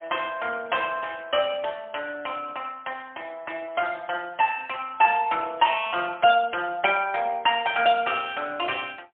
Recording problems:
telephone audio; 240 Hz to 3.4 kHz, AMR-NB, then MP3

